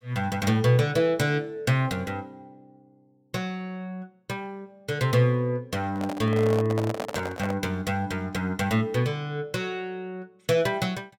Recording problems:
microphone handling noise; from 6 to 7.5 s; peak -2 dB vs average level

